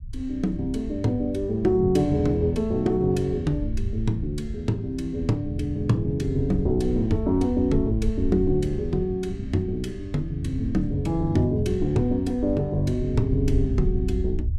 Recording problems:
rumble; below 78 Hz, SNR 9 dB

